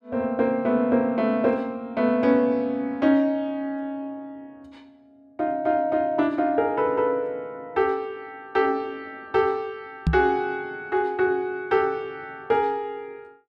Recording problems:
microphone thump; at 10 s; peak +5 dB vs average level

